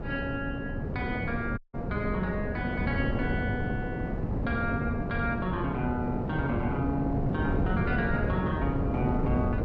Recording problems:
wind on the microphone; below 340 Hz, SNR -1 dB
dropout; at 1.5 s

